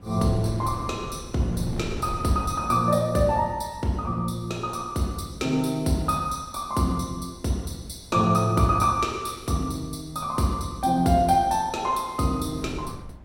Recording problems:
wind noise; below 260 Hz, SNR 17 dB

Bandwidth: 16.5 kHz